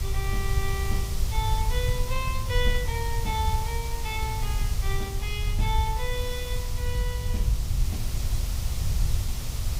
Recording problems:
electrical hum; 60 Hz, harmonics up to 720 Hz, SNR 15 dB
background hiss; SNR 5 dB
rumble; below 82 Hz, SNR -4 dB

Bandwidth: 15.5 kHz